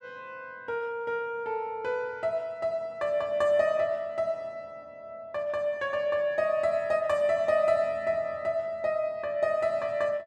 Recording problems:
none

